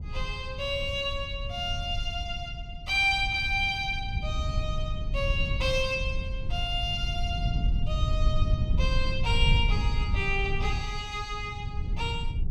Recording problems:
rumble; below 92 Hz, SNR 2 dB

